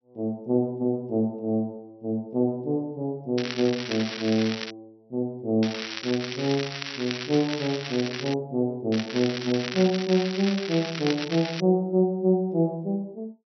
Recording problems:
treble missing; nothing above 5.8 kHz
crackling; from 3.5 to 4.5 s, from 5.5 to 8.5 s and from 9 to 12 s; loose cable, SNR 7 dB

